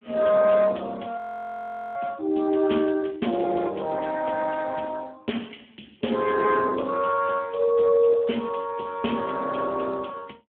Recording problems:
phone line; 190 Hz to 2.8 kHz, Speex
frozen audio; at 1 s for 1 s

